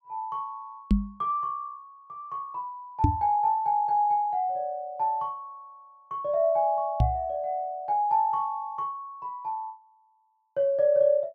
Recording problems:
microphone bump; at 1 s, at 3 s and at 7 s; peak +8 dB vs average level

